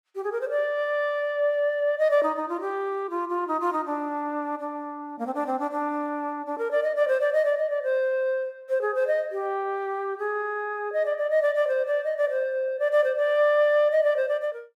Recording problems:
none

